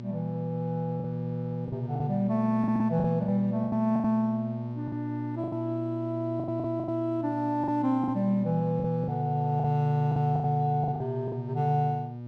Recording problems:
mains hum; 60 Hz, harmonics up to 600 Hz, SNR 7 dB
lost packets; 10% of the sound replaced, filled with the last packet

